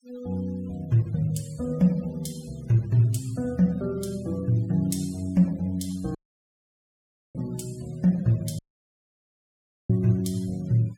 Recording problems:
noise reduction artefacts; signal-to-artefact ratio 26 dB
audio cutting out; at 6 s for 1 s and at 8.5 s for 1.5 s

